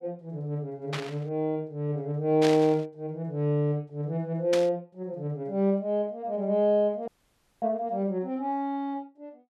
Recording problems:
static burst; at 1 s, at 2.5 s and at 4.5 s; peak 0 dB vs average level
audio cutting out; at 7 s for 0.5 s

